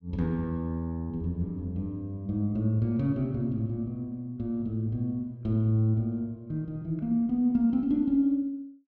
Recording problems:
none

